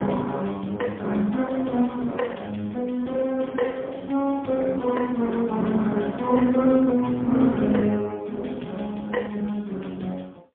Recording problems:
phone line; 150 Hz to 3.4 kHz, AMR-NB, then MP3

